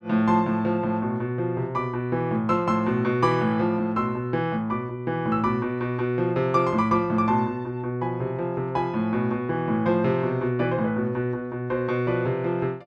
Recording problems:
none

